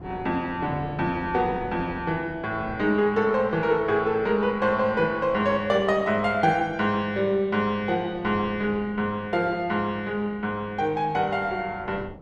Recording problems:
wind on the microphone; below 450 Hz, SNR 18 dB

